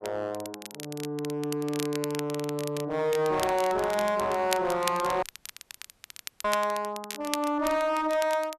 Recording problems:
distortion; hard clipping, uneven, signal-to-distortion ratio 6 dB
crackle; vinyl, SNR 11 dB
audio cutting out; at 5 s for 1 s

